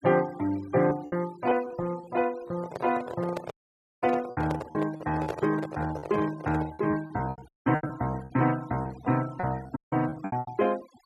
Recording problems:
denoising artefacts; signal-to-artefact ratio 19 dB
packet loss; 11% of the sound replaced, filled with repeated pitch periods
handling noise; from 2.5 to 7 s; peak +1 dB vs average level
audio cutting out; at 3.5 s for 0.5 s, at 7.5 s and at 10 s

